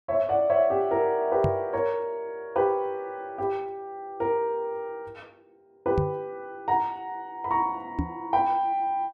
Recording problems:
knock on the microphone; at 1.5 s, at 6 s and at 8 s; peak +4 dB vs average level

